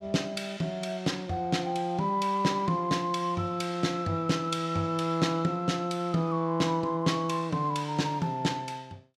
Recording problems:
none

